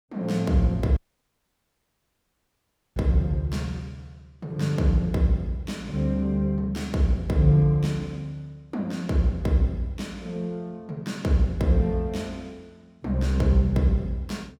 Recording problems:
audio cutting out; at 1 s for 2 s

